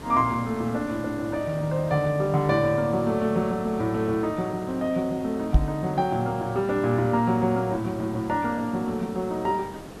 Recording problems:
background hiss; slope -7 dB per octave, SNR 15 dB
microphone bump; at 5.5 s; peak +9 dB vs average level

